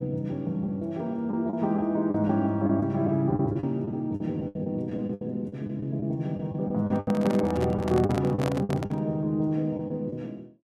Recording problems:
lost packets; 10% of the sound replaced, filled with the last packet
handling noise; from 7 to 9 s; peak 0 dB vs average level

